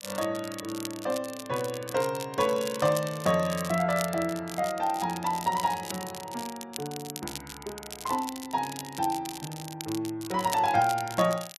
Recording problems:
crackling; vinyl, SNR 11 dB

